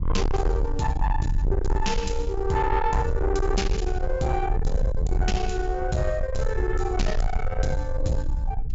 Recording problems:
low-pass filter; nothing above 8 kHz
distortion; soft clipping, signal-to-distortion ratio 6 dB
rumble; below 72 Hz, SNR 1 dB

